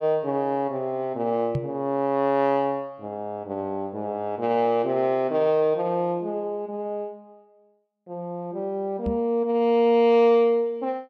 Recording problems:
microphone thump; at 1.5 s and at 9 s; peak 0 dB vs average level

